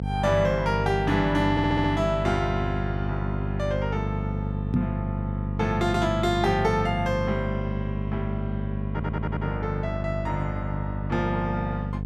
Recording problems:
electrical hum; 50 Hz, harmonics up to 500 Hz, SNR 2 dB
audio stuttering; at 1.5 s and at 9 s
microphone thump; at 4.5 s; peak +7 dB vs average level

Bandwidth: 13.5 kHz